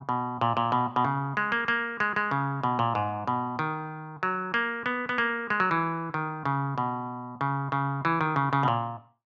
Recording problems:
none

